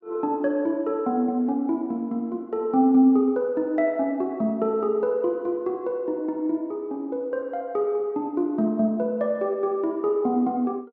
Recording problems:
none

